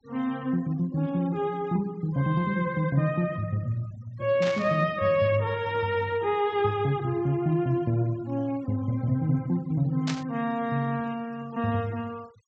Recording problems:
low-pass filter; nothing above 8 kHz
denoising artefacts; signal-to-artefact ratio 24 dB
static burst; at 4.5 s and at 10 s; peak -2 dB vs average level

